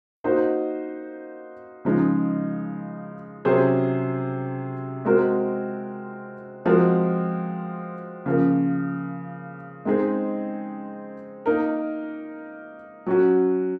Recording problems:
none

